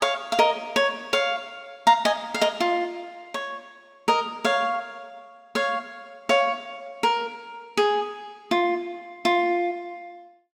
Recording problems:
none

